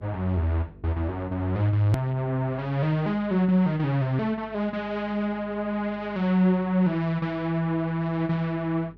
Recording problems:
mains hum; 50 Hz, harmonics up to 450 Hz, SNR 24 dB
click at an edit; at 2 s

